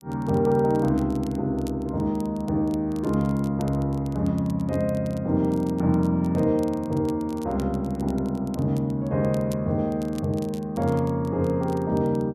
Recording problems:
crackling; vinyl, SNR 26 dB

